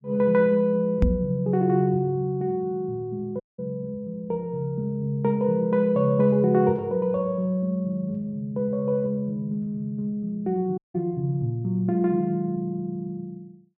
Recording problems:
microphone thump; at 1 s; peak +6 dB vs average level
audio cutting out; at 3.5 s and at 11 s

